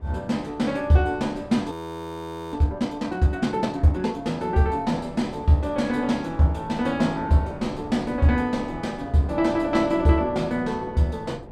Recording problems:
wind noise; below 540 Hz, SNR 17 dB
audio freezing; at 1.5 s for 1 s

